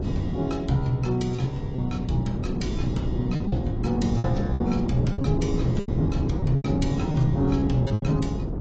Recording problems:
codec artefacts; AAC, log-spectral distance 2 dB, nothing above 7.3 kHz
wind on the microphone; below 260 Hz, SNR 2 dB
packet loss; 8% of the sound replaced, filled with repeated pitch periods

